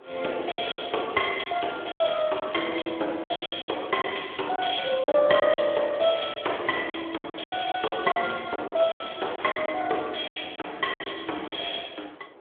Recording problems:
phone line; 300 Hz to 3.5 kHz, Speex
wind noise; below 910 Hz, SNR 20 dB
packet loss; 12% of the sound replaced, filled with silence

